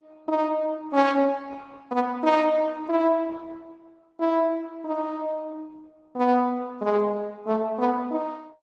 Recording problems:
codec artefacts; Opus, then AAC, log-spectral distance 3 dB

